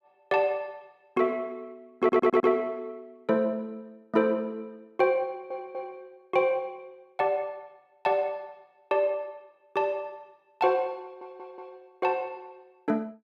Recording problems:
audio stuttering; at 2 s, at 5.5 s and at 11 s

